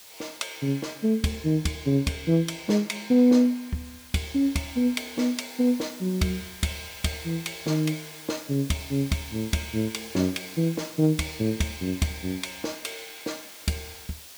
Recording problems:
hiss; slope +1 dB per octave, SNR 17 dB

